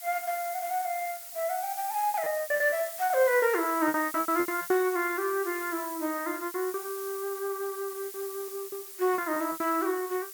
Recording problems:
background hiss; slope +3 dB per octave, SNR 9 dB
packet loss; 13% of the sound replaced, filled with repeated pitch periods

